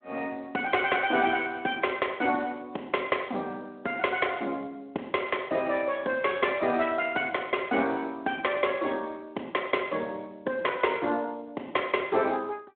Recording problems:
telephone audio; 280 Hz to 3.3 kHz, Speex

